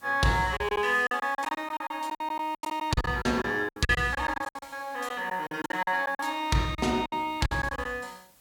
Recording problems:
background hiss; slope -1 dB per octave, SNR 28 dB
packet loss; 16% of the sound replaced, filled with silence

